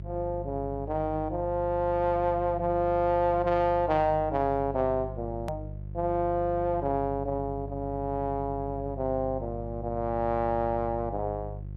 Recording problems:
hum; 50 Hz, harmonics up to 400 Hz, SNR 11 dB
click at an edit; at 5.5 s

